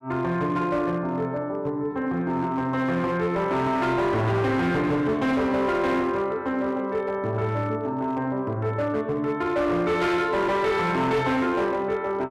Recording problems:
distorted audio; hard clipping, signal-to-distortion ratio 11 dB

